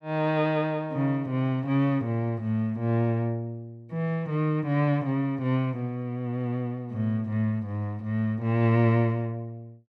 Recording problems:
none

